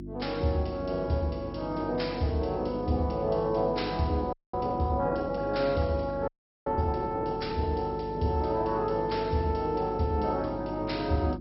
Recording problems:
lossy compression; MP2, log-spectral distance 3 dB, nothing above 5.5 kHz
hum; 50 Hz, harmonics up to 350 Hz, SNR 10 dB
frozen audio; at 4.5 s and at 6.5 s

